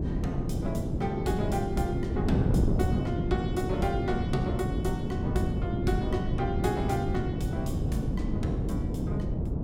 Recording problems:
wind noise; below 260 Hz, SNR -3 dB

